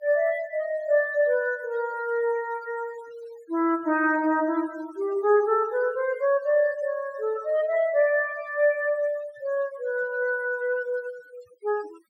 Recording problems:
noise reduction artefacts; signal-to-artefact ratio 23 dB

